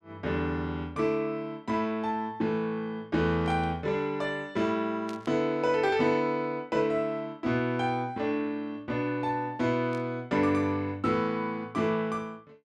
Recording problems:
burst of static; at 3.5 s, at 5 s and at 10 s; peak -11 dB vs average level

